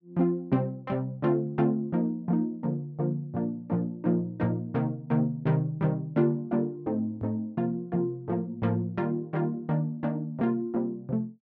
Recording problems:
none

